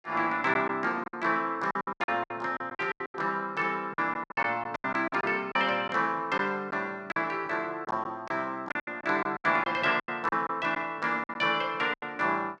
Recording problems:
packet loss; 13% of the sound replaced, filled with silence

